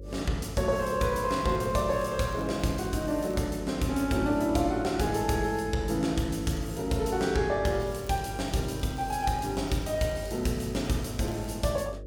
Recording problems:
hum; 50 Hz, harmonics up to 550 Hz, SNR 14 dB
crackling; from 1 to 3.5 s, at 6.5 s and from 7.5 to 12 s; loose cable, SNR 26 dB

